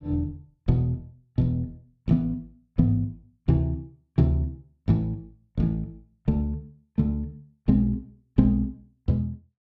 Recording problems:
none

